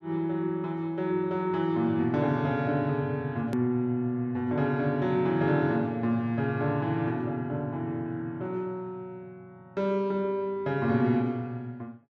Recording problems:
edit click; at 3.5 s

